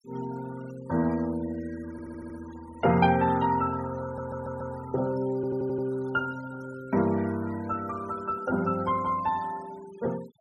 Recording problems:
noise reduction artefacts; signal-to-artefact ratio 19 dB
stutter; at 2 s, at 4 s and at 5.5 s

